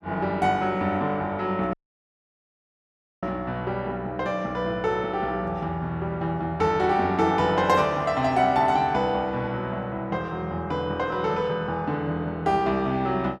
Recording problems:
dropout; at 1.5 s for 1.5 s

